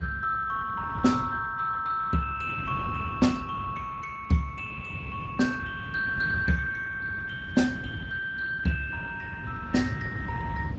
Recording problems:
codec artefacts; Speex, log-spectral distance 4 dB, nothing above 7.6 kHz
rumble; below 220 Hz, SNR 10 dB

